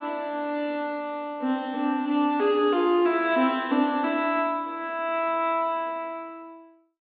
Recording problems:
treble cut off; nothing above 4.5 kHz

